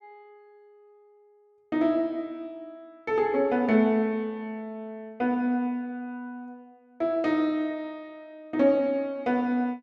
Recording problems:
none

